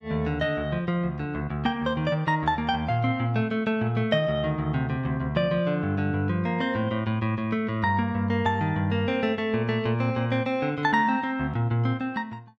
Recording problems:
none

